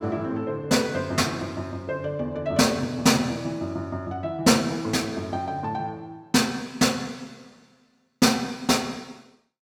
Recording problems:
none

